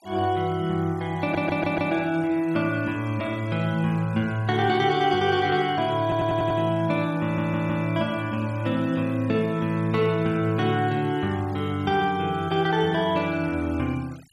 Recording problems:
denoising artefacts; signal-to-artefact ratio 24 dB
audio stuttering; at 1 s, at 6 s and at 7 s

